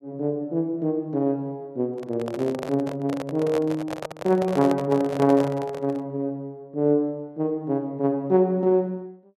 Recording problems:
microphone handling noise; from 2 to 6 s; peak -2 dB vs average level

